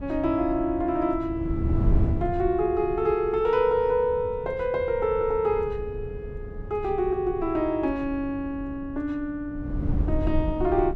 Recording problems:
wind noise; below 120 Hz, SNR 7 dB

